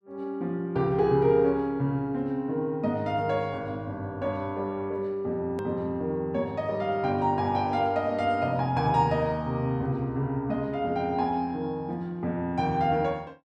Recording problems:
hard cut with a click; at 5.5 s

